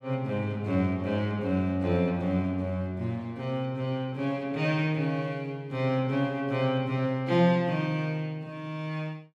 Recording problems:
none

